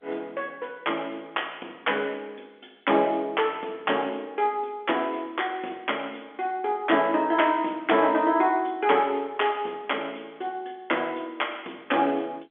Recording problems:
phone line; 240 Hz to 3.4 kHz, G.711

